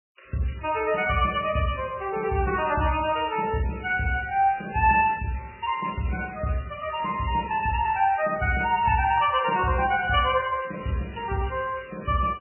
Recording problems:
lossy codec; MP3, log-spectral distance 7 dB, nothing above 2.9 kHz

